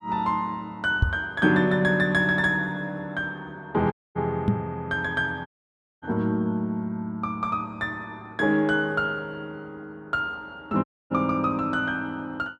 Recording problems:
knock on the microphone; at 1 s and at 4.5 s; peak +8 dB vs average level
audio cutting out; at 4 s, at 5.5 s for 0.5 s and at 11 s

